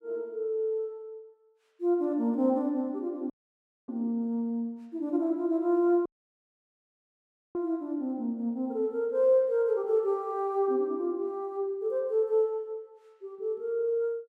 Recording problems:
audio cutting out; at 3.5 s for 0.5 s and at 6 s for 1.5 s

